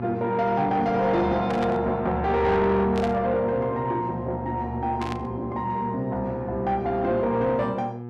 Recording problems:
distorted audio; soft clipping, signal-to-distortion ratio 11 dB
mains hum; 60 Hz, harmonics up to 1.2 kHz, SNR 11 dB
static burst; at 1.5 s, at 3 s and at 5 s; peak -8 dB vs average level

